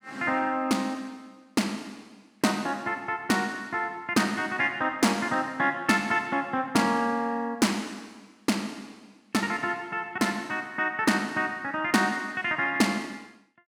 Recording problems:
none

